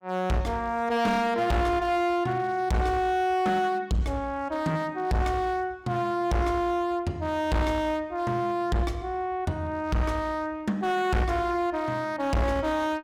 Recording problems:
distortion; hard clipping, signal-to-distortion ratio 8 dB

